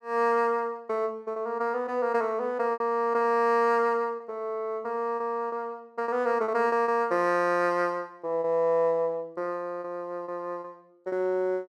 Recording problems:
lost packets; 5% of the sound replaced, filled with repeated pitch periods

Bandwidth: 13.5 kHz